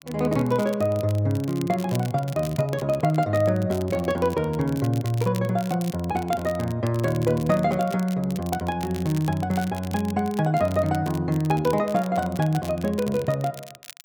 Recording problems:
crackle; vinyl, SNR 19 dB

